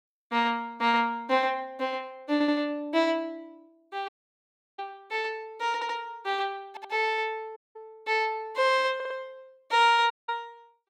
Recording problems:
audio stuttering; 4 times, first at 2.5 s
audio cutting out; at 4 s for 0.5 s, at 7.5 s and at 10 s

